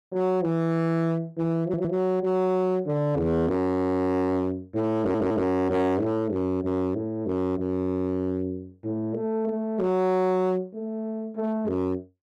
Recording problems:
distortion; hard clipping, signal-to-distortion ratio 10 dB
stutter; at 1.5 s and at 5 s

